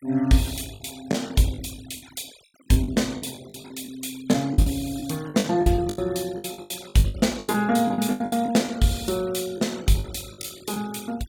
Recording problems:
noise reduction artefacts; signal-to-artefact ratio 22 dB
lost packets; 15% of the sound replaced, filled with the last packet

